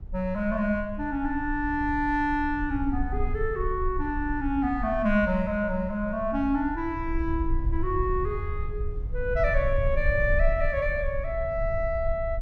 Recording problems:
low-frequency rumble; below 64 Hz, strongest tone 24 Hz, SNR 6 dB

